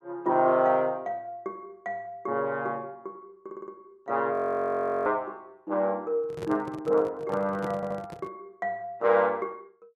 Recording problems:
audio stuttering; at 3.5 s and at 8 s
frozen audio; at 4.5 s for 0.5 s
microphone handling noise; from 6 to 8.5 s; peak -5 dB vs average level

